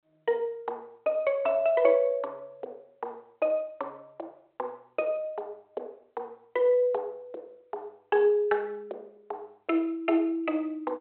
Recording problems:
phone line; 320 Hz to 3.2 kHz, G.726

